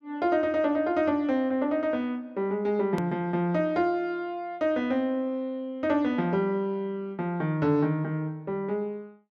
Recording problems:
click at an edit; at 3 s

